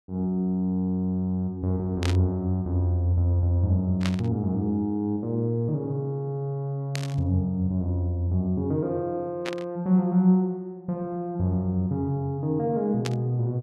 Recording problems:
burst of static; 5 times, first at 2 s; peak -2 dB vs average level

